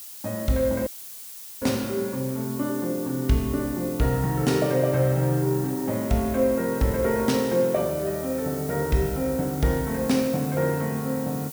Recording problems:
background hiss; slope +2 dB per octave, SNR 12 dB
dropout; at 1 s for 1 s

